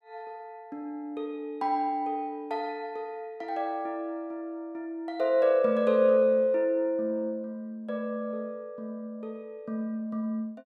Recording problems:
none

